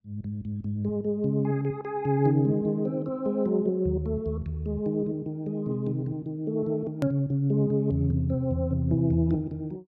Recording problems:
edit click; at 7 s

